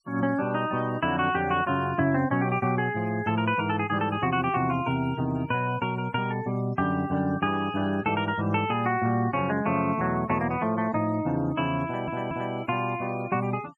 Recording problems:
noise reduction artefacts; signal-to-artefact ratio 21 dB
audio stuttering; at 12 s

